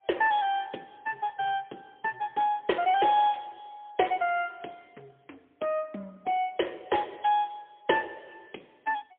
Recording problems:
telephone audio; 260 Hz to 3.1 kHz, AMR-NB, then MP3

